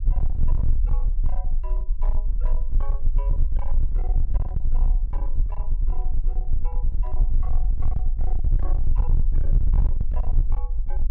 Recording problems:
distorted audio; hard clipping, signal-to-distortion ratio 7 dB
low-frequency rumble; below 40 Hz, strongest tone 18 Hz, SNR -19 dB

